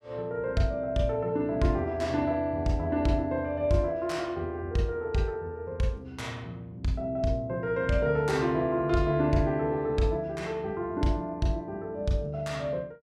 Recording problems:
none

